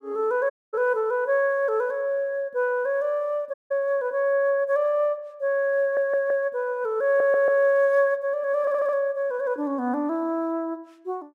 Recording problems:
audio cutting out; at 0.5 s and at 3.5 s
audio stuttering; at 6 s, at 7 s and at 8.5 s

